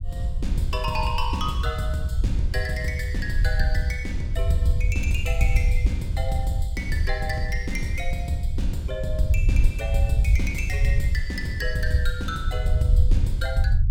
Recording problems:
low-frequency rumble; below 78 Hz, SNR -3 dB

